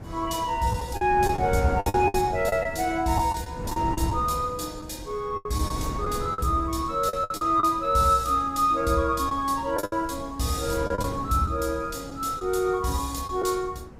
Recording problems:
wind on the microphone; below 300 Hz, SNR 12 dB
packet loss; 8% of the sound replaced, filled with the last packet

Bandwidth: 15.5 kHz